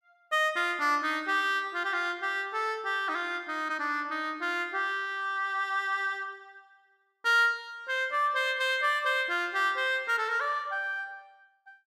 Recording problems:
none

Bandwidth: 14.5 kHz